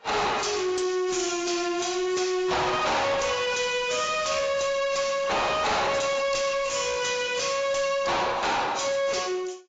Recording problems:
lossy codec; AAC, log-spectral distance 7 dB, nothing above 7.3 kHz
distorted audio; soft clipping, signal-to-distortion ratio 5 dB

